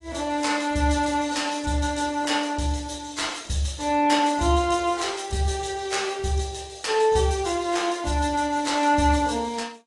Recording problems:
lossy compression; AAC, log-spectral distance 4 dB, nothing above 10.1 kHz

